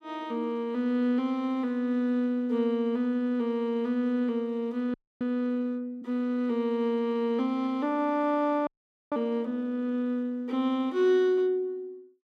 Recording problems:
audio freezing; at 5 s and at 8.5 s

